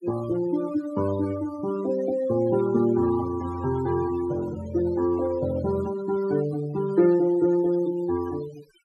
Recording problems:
denoising artefacts; signal-to-artefact ratio 16 dB

